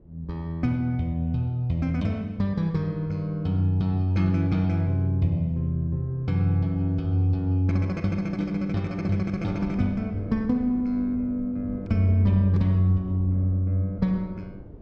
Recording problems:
wind noise; below 260 Hz, SNR 19 dB

